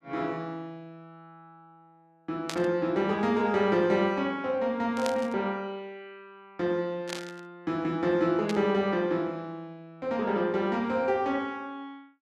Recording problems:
static burst; 4 times, first at 2.5 s; peak -2 dB vs average level

